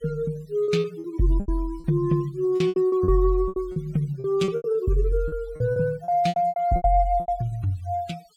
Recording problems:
denoising artefacts; signal-to-artefact ratio 26 dB
lost packets; 15% of the sound replaced, filled with repeated pitch periods

